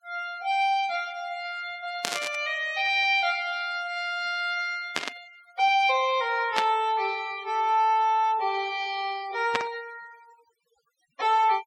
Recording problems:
noise reduction artefacts; signal-to-artefact ratio 22 dB
burst of static; 4 times, first at 2 s; peak +3 dB vs average level

